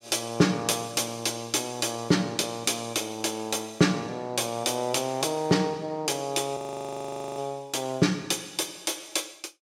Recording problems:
frozen audio; at 6.5 s for 1 s

